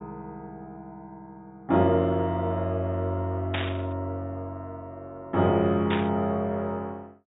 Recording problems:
treble missing; nothing above 4 kHz
static burst; at 3.5 s and at 6 s; peak 0 dB vs average level

